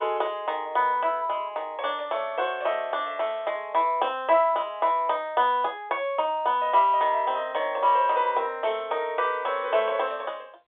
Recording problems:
telephone audio; 340 Hz to 3.6 kHz, G.711

